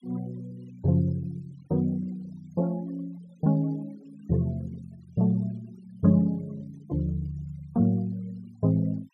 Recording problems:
denoising artefacts; signal-to-artefact ratio 27 dB

